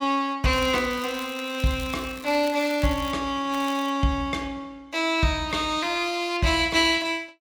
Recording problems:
crackling; from 0.5 to 3 s and at 3.5 s; loose cable, SNR 17 dB

